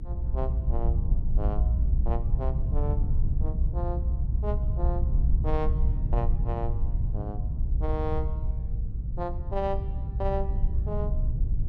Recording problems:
low-frequency rumble; below 74 Hz, SNR -7 dB

